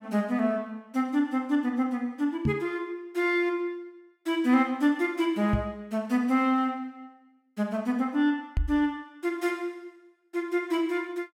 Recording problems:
microphone bump; at 2.5 s, at 5.5 s and at 8.5 s; peak +5 dB vs average level

